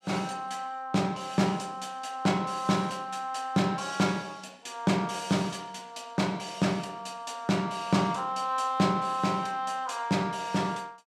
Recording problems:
none

